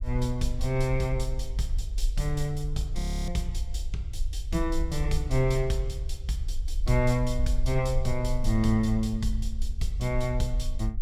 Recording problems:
low-frequency rumble; below 50 Hz, strongest tone 22 Hz, SNR 4 dB
frozen audio; at 3 s

